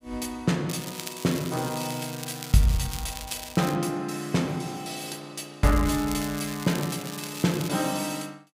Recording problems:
crackle; from 0.5 to 4 s and from 5.5 to 7.5 s; loose cable, SNR 10 dB

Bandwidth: 15.5 kHz